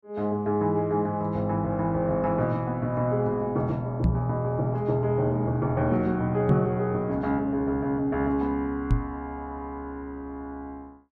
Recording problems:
microphone thump; at 4 s, at 6.5 s and at 9 s; peak +6 dB vs average level

